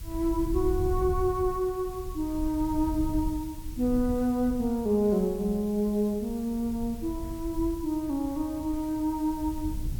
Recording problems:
hiss; slope +1 dB per octave, SNR 21 dB
wind noise; below 82 Hz, SNR 10 dB

